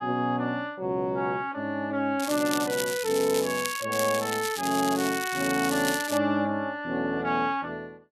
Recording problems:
crackle; from 2 to 4 s and from 4 to 6 s; loose cable, SNR 7 dB

